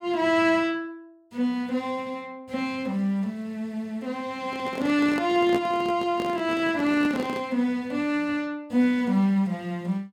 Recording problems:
microphone handling noise; from 4.5 to 7.5 s; peak -1 dB vs average level

